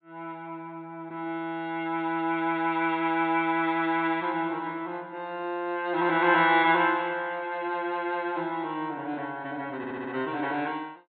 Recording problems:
treble cut off; nothing above 4 kHz
stutter; at 10 s

